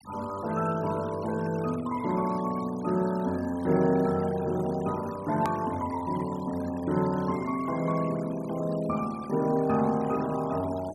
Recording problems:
noise reduction artefacts; signal-to-artefact ratio 19 dB
edit click; at 5.5 s

